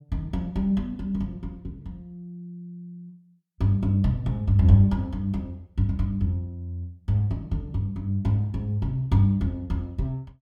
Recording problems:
none

